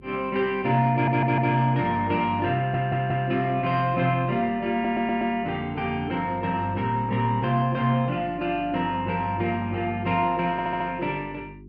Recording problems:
electrical hum; 50 Hz, harmonics up to 400 Hz, SNR 22 dB
audio stuttering; 4 times, first at 1 s

